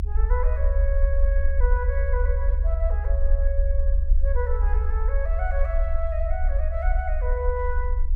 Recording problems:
rumble; below 66 Hz, SNR -8 dB

